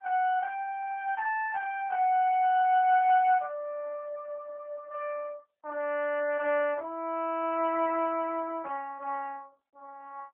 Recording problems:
telephone audio; 370 Hz to 3.1 kHz, AMR-NB

